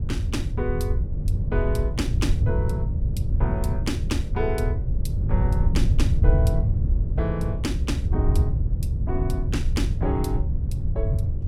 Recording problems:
electrical hum; 50 Hz, harmonics up to 600 Hz, SNR 14 dB
wind noise; below 100 Hz, SNR -6 dB

